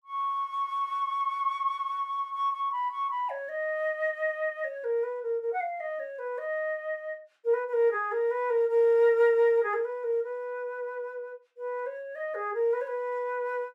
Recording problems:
none

